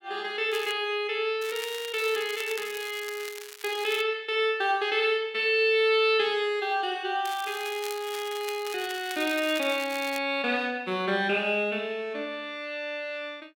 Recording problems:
crackle; at 0.5 s, from 1.5 to 4 s and from 7.5 to 10 s; loose cable, SNR 13 dB

